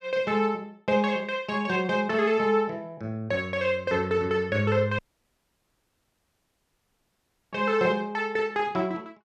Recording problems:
audio cutting out; at 5 s for 2.5 s

